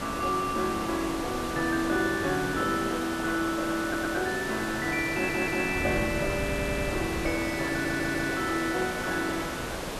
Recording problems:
hiss; slope -5 dB per octave, SNR 6 dB
wind on the microphone; below 180 Hz, SNR 13 dB
audio stuttering; 4 times, first at 4 s

